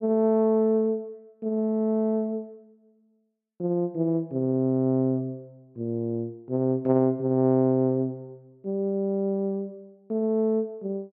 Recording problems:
none

